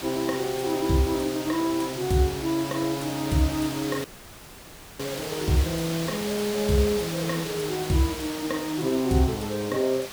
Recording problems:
hiss; slope -2 dB per octave, SNR 8 dB
dropout; at 4 s for 1 s

